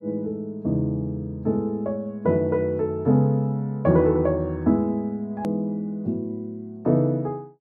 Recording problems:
hard cut with a click; at 5.5 s

